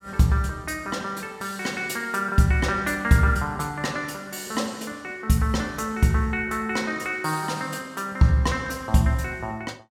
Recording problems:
none

